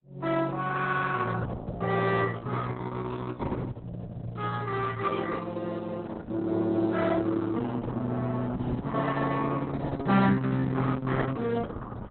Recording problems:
lossy compression; Opus, log-spectral distance 4 dB, nothing above 3.9 kHz

